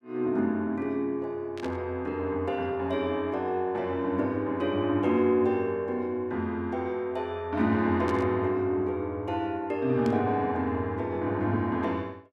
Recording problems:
burst of static; at 1.5 s, at 8 s and at 10 s; peak -11 dB vs average level

